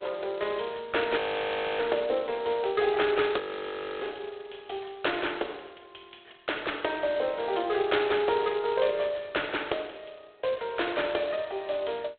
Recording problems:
telephone audio; 320 Hz to 3.9 kHz, G.726
frozen audio; at 1 s for 0.5 s and at 3.5 s for 0.5 s

